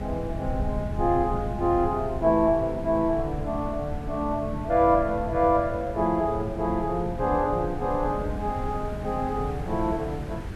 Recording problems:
background hiss; SNR 16 dB
wind on the microphone; below 120 Hz, SNR 10 dB

